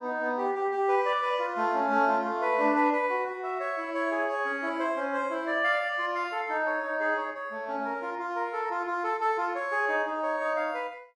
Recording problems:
none

